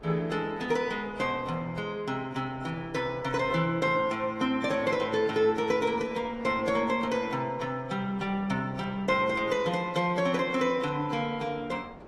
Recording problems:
lossy codec; AAC, log-spectral distance 2 dB
wind on the microphone; below 780 Hz, SNR 22 dB

